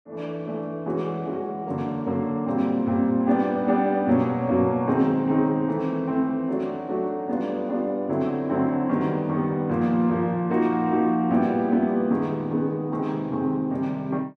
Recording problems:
none

